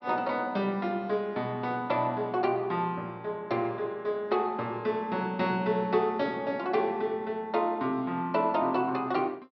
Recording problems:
treble cut off; nothing above 5.5 kHz

